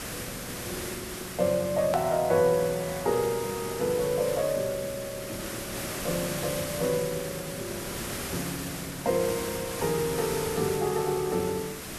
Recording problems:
background hiss; SNR 6 dB
hard cut with a click; at 2 s

